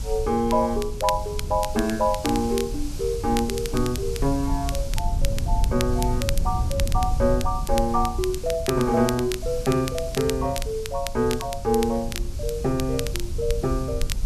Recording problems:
background hiss; SNR 17 dB
rumble; below 72 Hz, SNR 7 dB
wind noise; below 120 Hz, SNR 11 dB
crackle; vinyl, SNR 11 dB

